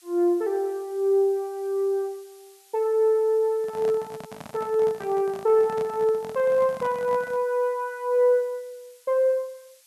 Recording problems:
background hiss; slope +5 dB per octave, SNR 29 dB
microphone handling noise; from 3.5 to 7.5 s; peak -11 dB vs average level

